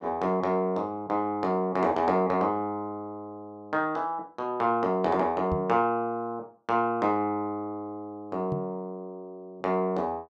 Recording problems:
knock on the microphone; at 5.5 s and at 8.5 s; peak -1 dB vs average level

